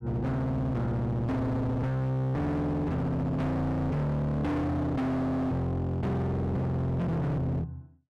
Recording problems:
distorted audio; hard clipping, signal-to-distortion ratio 6 dB

